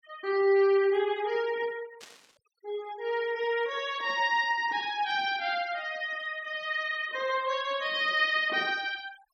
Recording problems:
denoising artefacts; signal-to-artefact ratio 20 dB
static burst; at 2 s; peak -14 dB vs average level

